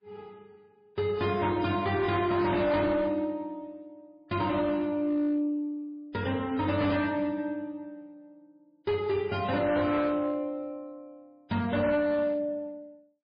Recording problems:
lossy codec; MP3, log-spectral distance 2 dB
distortion; hard clipping, signal-to-distortion ratio 12 dB

